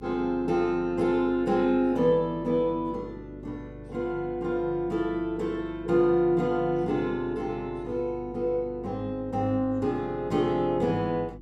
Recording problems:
hum; 50 Hz, harmonics up to 350 Hz, SNR 19 dB

